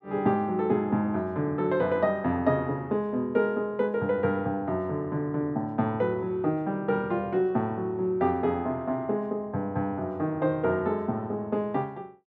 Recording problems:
none

